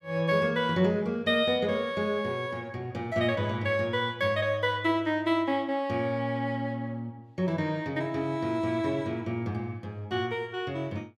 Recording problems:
none

